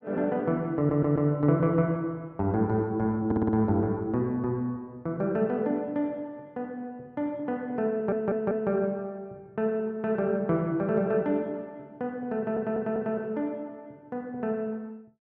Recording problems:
audio stuttering; 4 times, first at 1 s

